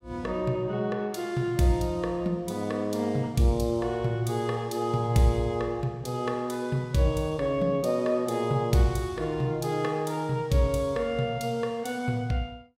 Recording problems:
none

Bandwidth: 16 kHz